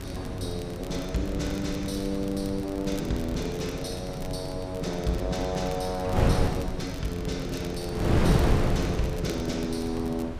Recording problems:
wind noise; below 310 Hz, SNR 1 dB
crackle; vinyl, SNR 18 dB

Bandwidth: 15 kHz